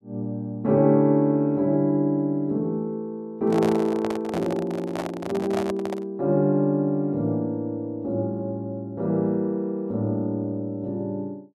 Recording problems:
handling noise; from 3.5 to 6 s; peak -1 dB vs average level

